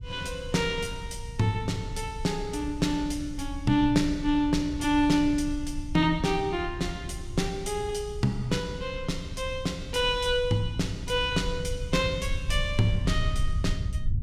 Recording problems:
low-frequency rumble; below 84 Hz, SNR 9 dB

